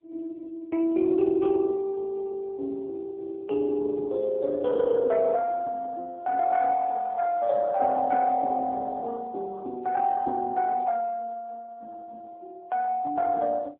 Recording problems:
telephone audio; 240 Hz to 2.5 kHz, AMR-NB

